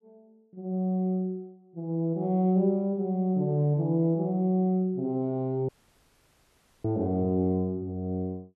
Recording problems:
dropout; at 5.5 s for 1 s

